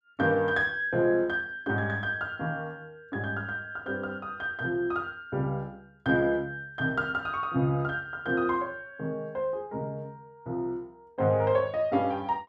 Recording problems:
none

